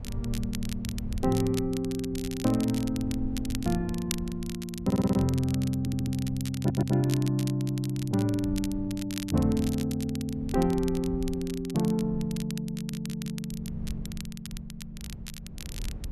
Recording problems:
wind on the microphone; below 88 Hz, SNR 13 dB
crackle; vinyl, SNR 14 dB
audio stuttering; 4 times, first at 5 s

